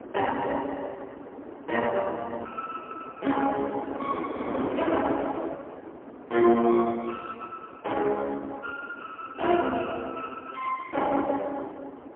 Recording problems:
phone line; 220 Hz to 2.6 kHz, AMR-NB, then MP3
wind on the microphone; below 700 Hz, SNR 10 dB

